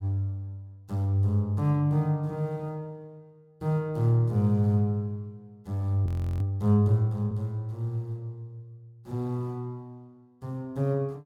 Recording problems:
frozen audio; at 6 s

